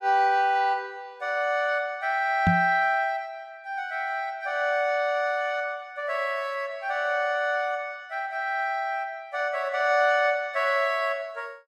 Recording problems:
microphone bump; at 2.5 s; peak +5 dB vs average level

